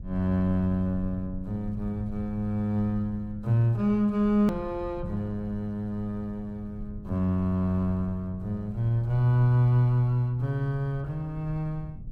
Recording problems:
low-frequency rumble; below 98 Hz, SNR 16 dB
click at an edit; at 4.5 s

